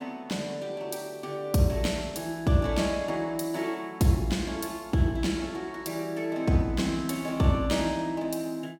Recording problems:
none

